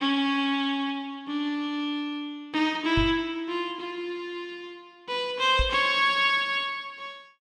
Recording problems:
microphone thump; at 3 s and at 5.5 s; peak +2 dB vs average level

